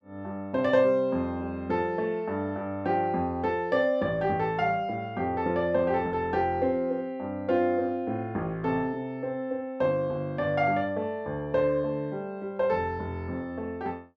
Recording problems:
none

